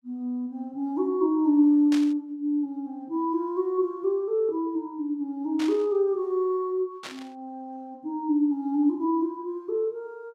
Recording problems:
burst of static; at 2 s, at 5.5 s and at 7 s; peak -6 dB vs average level

